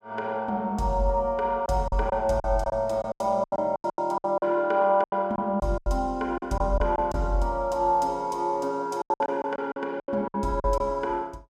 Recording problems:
packet loss; 12% of the sound replaced, filled with silence

